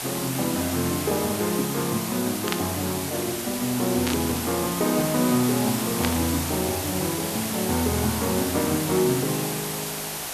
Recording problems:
hiss; SNR 3 dB
burst of static; at 2.5 s, at 4 s and at 6 s; peak +2 dB vs average level

